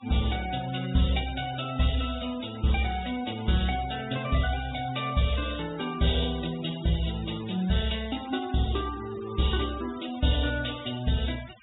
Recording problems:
treble missing; nothing above 4 kHz
noise reduction artefacts; signal-to-artefact ratio 15 dB

